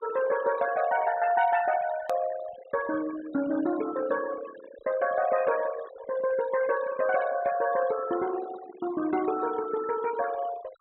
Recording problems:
low-pass filter; nothing above 3.9 kHz
denoising artefacts; signal-to-artefact ratio 15 dB
click at an edit; at 2 s

